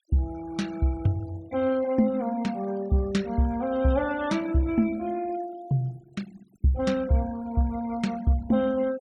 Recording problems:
noise reduction artefacts; signal-to-artefact ratio 21 dB

